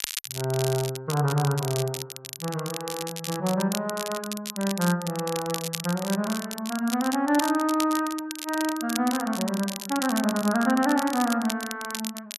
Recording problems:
crackling; vinyl, SNR 8 dB

